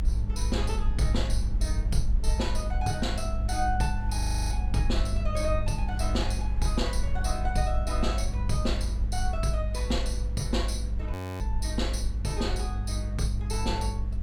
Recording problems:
hum; 50 Hz, harmonics up to 500 Hz, SNR 6 dB
low-frequency rumble; below 56 Hz, strongest tone 54 Hz, SNR -2 dB
wind on the microphone; below 610 Hz, SNR 21 dB
frozen audio; at 4 s and at 11 s

